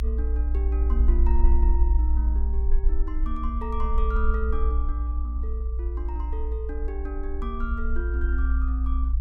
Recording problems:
low-frequency rumble; below 58 Hz, SNR -10 dB

